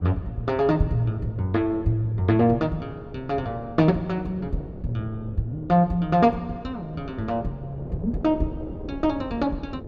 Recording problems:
wind on the microphone; below 390 Hz, SNR 15 dB

